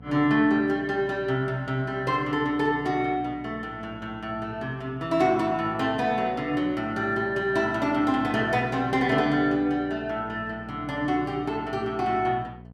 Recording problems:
hum; 60 Hz, harmonics up to 1 kHz, SNR 19 dB

